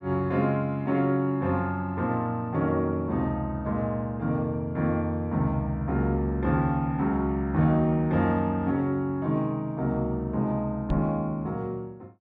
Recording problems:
knock on the microphone; at 11 s; peak 0 dB vs average level

